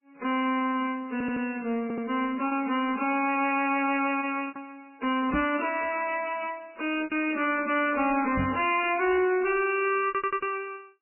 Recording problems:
lossy compression; MP3, log-spectral distance 5 dB, nothing above 2.5 kHz
distorted audio; soft clipping, signal-to-distortion ratio 10 dB
lost packets; 4% of the sound replaced, filled with repeated pitch periods
stutter; at 1 s, at 2 s and at 10 s
knock on the microphone; at 5.5 s and at 8.5 s; peak +1 dB vs average level

